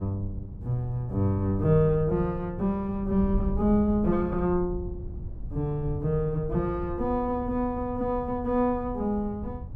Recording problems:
wind noise; below 100 Hz, SNR 10 dB

